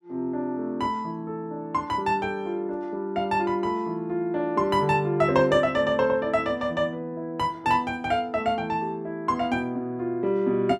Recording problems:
none

